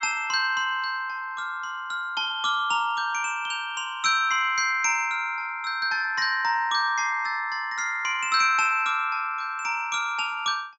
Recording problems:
treble missing; nothing above 8 kHz

